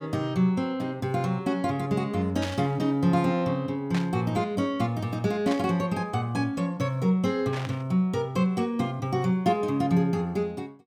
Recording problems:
static burst; 4 times, first at 2.5 s; peak -5 dB vs average level

